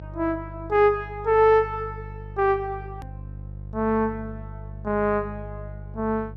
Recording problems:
mains hum; 50 Hz, harmonics up to 550 Hz, SNR 15 dB
hard cut with a click; at 3 s

